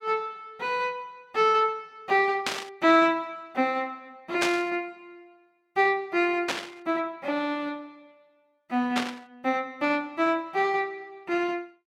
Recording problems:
burst of static; 4 times, first at 2.5 s; peak +4 dB vs average level

